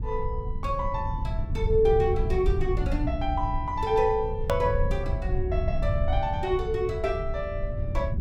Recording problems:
low-frequency rumble; below 94 Hz, SNR 3 dB
hard cut with a click; at 4.5 s

